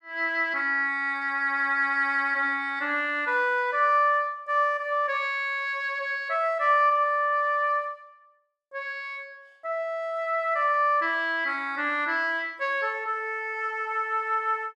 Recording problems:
none

